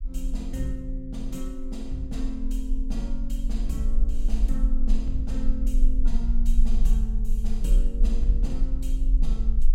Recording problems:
rumble; below 40 Hz, strongest tone 18 Hz, SNR -7 dB

